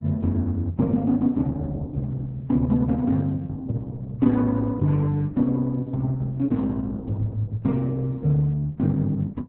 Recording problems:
lossy compression; Opus, log-spectral distance 2 dB, nothing above 4 kHz

